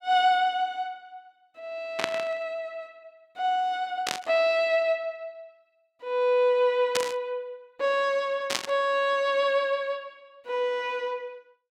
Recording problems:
static burst; 4 times, first at 2 s; peak +4 dB vs average level

